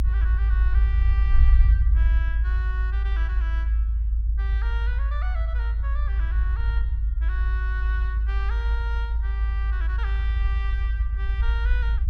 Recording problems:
rumble; below 56 Hz, strongest tone 54 Hz, SNR -14 dB

